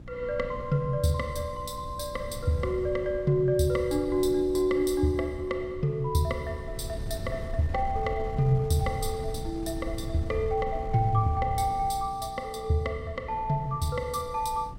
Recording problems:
electrical hum; 60 Hz, harmonics up to 600 Hz, SNR 20 dB
wind on the microphone; below 110 Hz, SNR 13 dB

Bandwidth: 16 kHz